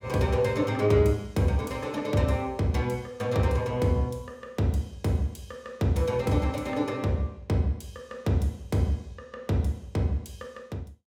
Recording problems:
none

